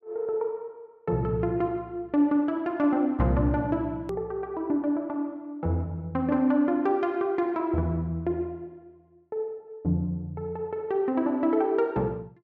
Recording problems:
click at an edit; at 4 s

